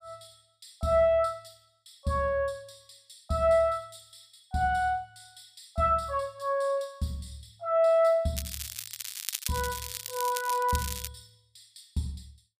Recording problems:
crackle; from 8.5 to 11 s; loose cable, SNR 8 dB

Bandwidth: 15 kHz